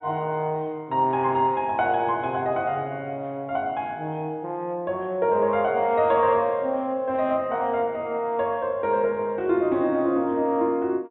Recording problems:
treble cut off; nothing above 3.9 kHz

